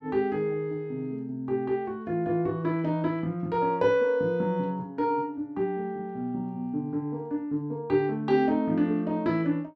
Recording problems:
treble missing; nothing above 7.9 kHz

